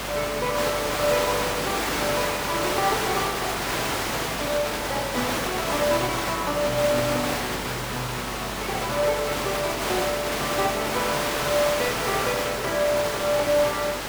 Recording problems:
mains hum; 50 Hz, harmonics up to 450 Hz, SNR 17 dB
hiss; slope -3 dB per octave, SNR 0 dB

